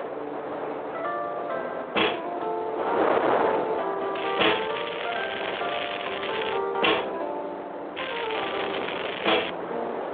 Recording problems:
phone line; 340 Hz to 3.5 kHz, Speex
distorted audio; hard clipping, signal-to-distortion ratio 6 dB
wind on the microphone; below 1 kHz, SNR 3 dB
crackle; from 4 to 6.5 s and from 8 to 9.5 s; loose cable, SNR 4 dB

